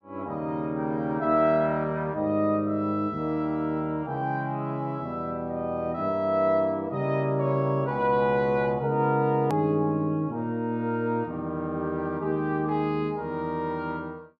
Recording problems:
hard cut with a click; at 9.5 s

